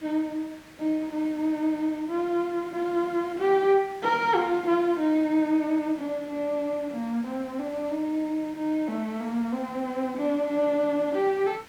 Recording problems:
hiss; SNR 23 dB

